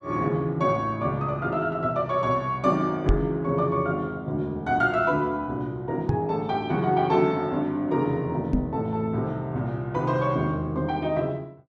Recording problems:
microphone bump; at 3 s, at 6 s and at 8.5 s; peak +6 dB vs average level

